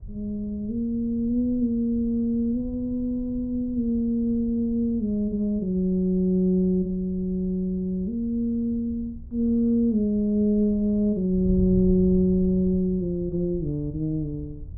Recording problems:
wind noise; below 100 Hz, SNR 15 dB

